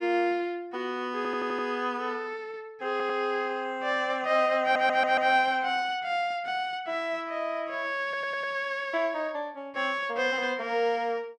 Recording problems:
audio stuttering; 4 times, first at 1 s

